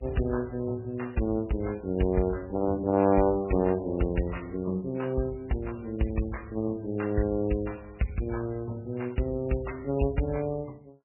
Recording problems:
lossy codec; MP3, log-spectral distance 4 dB, nothing above 2.8 kHz

